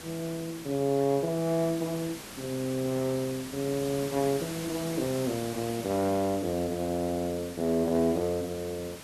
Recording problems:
hiss; slope -3 dB per octave, SNR 11 dB

